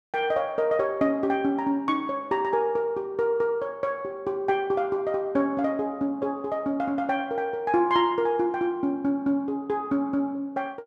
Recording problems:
none

